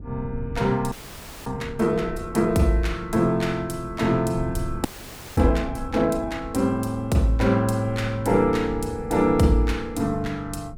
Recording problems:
wind on the microphone; below 150 Hz, SNR 14 dB
frozen audio; at 1 s for 0.5 s and at 5 s for 0.5 s

